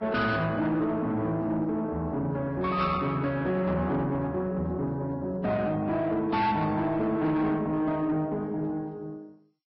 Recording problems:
lossy compression; MP2, then Vorbis, log-spectral distance 2 dB, nothing above 5.5 kHz
distortion; soft clipping, signal-to-distortion ratio 12 dB

